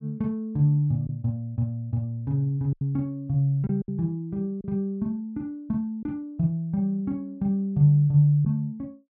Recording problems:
packet loss; 3% of the sound replaced, filled with silence

